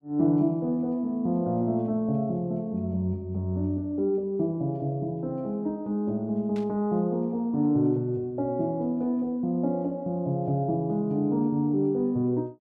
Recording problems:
static burst; at 6.5 s; peak -16 dB vs average level

